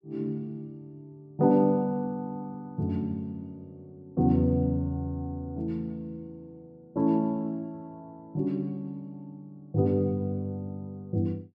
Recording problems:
none

